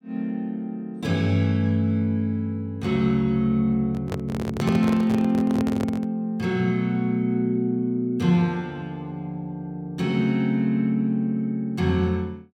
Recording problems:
handling noise; from 4 to 6 s; peak 0 dB vs average level

